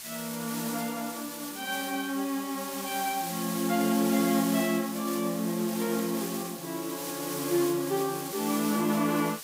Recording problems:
background hiss; slope +2 dB per octave, SNR 7 dB

